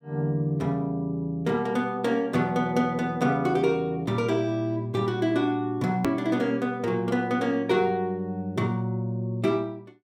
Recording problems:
click at an edit; at 6 s

